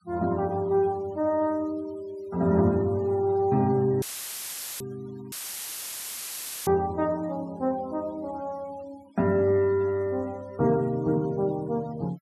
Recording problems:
noise reduction artefacts; signal-to-artefact ratio 25 dB
audio cutting out; at 4 s for 1 s and at 5.5 s for 1.5 s; filled with static

